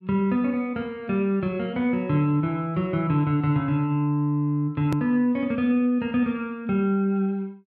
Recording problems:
edit click; at 5 s

